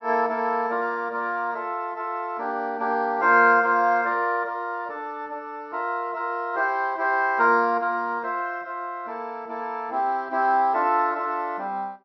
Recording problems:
low-pass filter; nothing above 5.8 kHz

